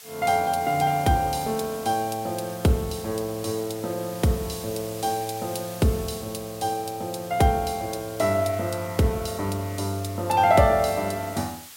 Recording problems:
hiss; slope +3 dB per octave, SNR 16 dB

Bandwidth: 16 kHz